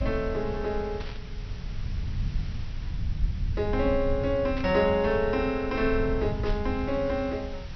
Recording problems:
low-pass filter; nothing above 5.9 kHz
hiss; slope -2 dB per octave, SNR 22 dB
low-frequency rumble; below 96 Hz, SNR 7 dB
static burst; at 1 s, at 4.5 s and at 6.5 s; peak -10 dB vs average level

